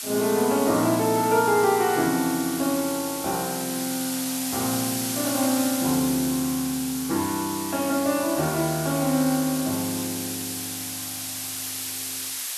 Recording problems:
background hiss; slope +4 dB per octave, SNR 5 dB

